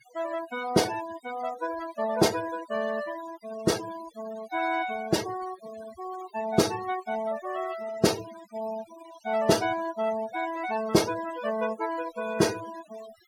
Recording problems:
noise reduction artefacts; signal-to-artefact ratio 15 dB

